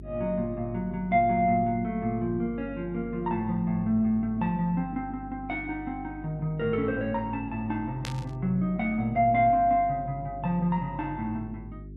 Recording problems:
hum; 50 Hz, harmonics up to 400 Hz, SNR 15 dB
burst of static; at 8 s; peak -4 dB vs average level

